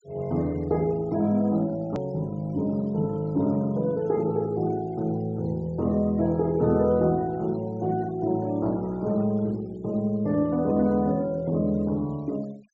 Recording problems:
low-pass filter; nothing above 8 kHz
noise reduction artefacts; signal-to-artefact ratio 28 dB
click at an edit; at 2 s

